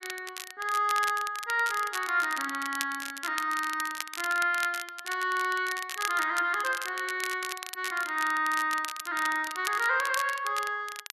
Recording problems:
crackle; vinyl, SNR 10 dB

